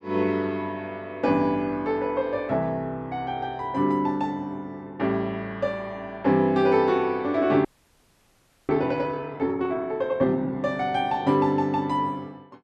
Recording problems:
frozen audio; at 7.5 s for 1 s

